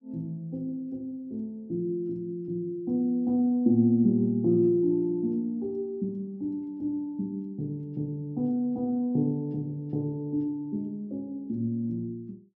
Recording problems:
none

